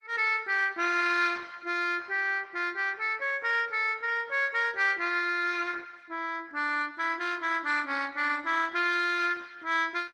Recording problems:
lossy codec; Opus, log-spectral distance 4 dB, nothing above 14.3 kHz

